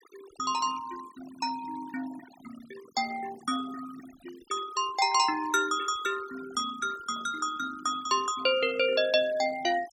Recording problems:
noise reduction artefacts; signal-to-artefact ratio 17 dB

